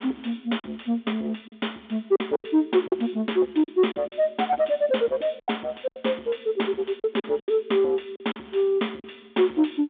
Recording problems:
phone line; 240 Hz to 3.6 kHz, G.726
distorted audio; soft clipping, signal-to-distortion ratio 12 dB
lost packets; 8% of the sound replaced, filled with silence

